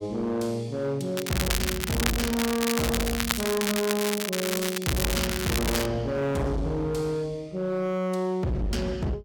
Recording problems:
distorted audio; hard clipping, signal-to-distortion ratio 7 dB
crackle; from 1 to 6 s; loose cable, SNR 1 dB

